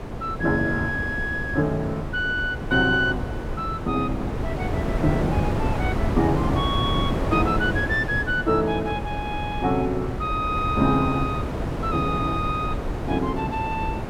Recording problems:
wind noise; below 460 Hz, SNR 3 dB

